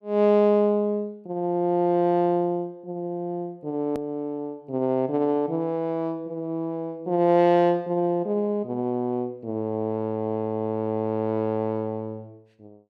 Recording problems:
click at an edit; at 4 s

